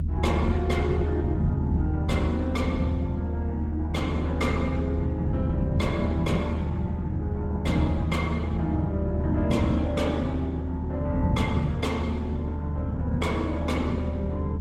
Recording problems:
lossy compression; Opus, log-spectral distance 2 dB, nothing above 19 kHz
rumble; below 140 Hz, strongest tone 78 Hz, SNR -3 dB

